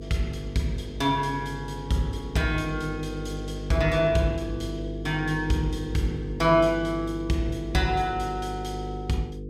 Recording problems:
hum; 50 Hz, harmonics up to 500 Hz, SNR 8 dB

